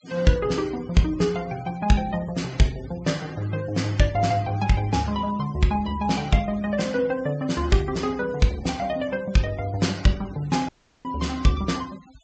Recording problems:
treble missing; nothing above 8 kHz
denoising artefacts; signal-to-artefact ratio 21 dB
dropout; at 11 s

